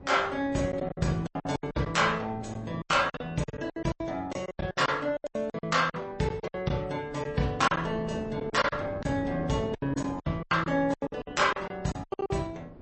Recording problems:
codec artefacts; MP3, log-spectral distance 2 dB, nothing above 8.2 kHz
wind noise; below 480 Hz, SNR 14 dB
lost packets; 17% of the sound replaced, filled with silence

